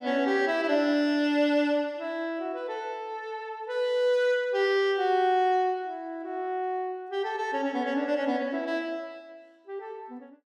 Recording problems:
none

